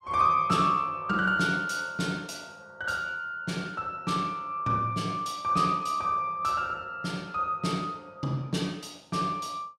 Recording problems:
none

